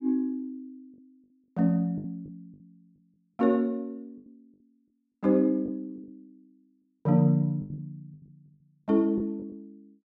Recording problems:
packet loss; 8% of the sound replaced, filled with the last packet

